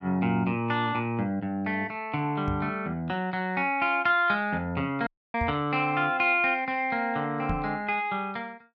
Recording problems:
microphone bump; at 2.5 s, at 5.5 s and at 7.5 s; peak -1 dB vs average level
dropout; at 5 s

